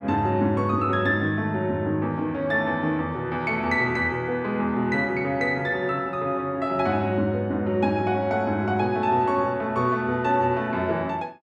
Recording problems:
none

